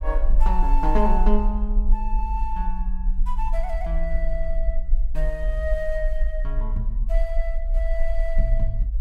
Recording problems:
low-frequency rumble; below 42 Hz, strongest tone 20 Hz, SNR -4 dB

